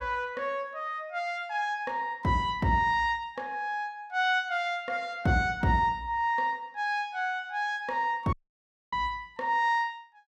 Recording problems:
dropout; at 8.5 s for 0.5 s

